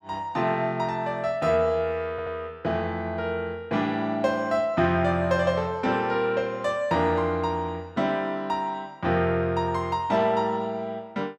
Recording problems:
audio stuttering; at 2 s

